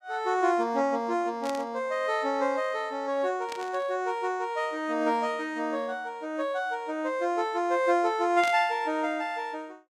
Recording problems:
static burst; at 1.5 s, at 3.5 s and at 8.5 s; peak -5 dB vs average level

